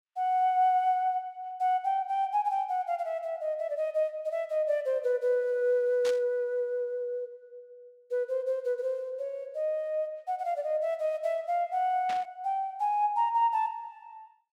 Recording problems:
burst of static; at 6 s and at 12 s; peak -7 dB vs average level

